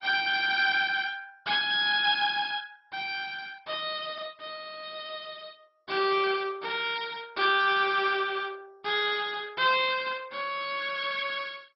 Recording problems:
lossy codec; MP2, log-spectral distance 4 dB, nothing above 5 kHz

